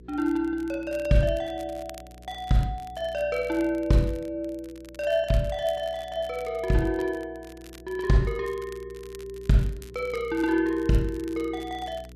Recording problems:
mains hum; 60 Hz, harmonics up to 480 Hz, SNR 21 dB
crackling; vinyl, SNR 24 dB

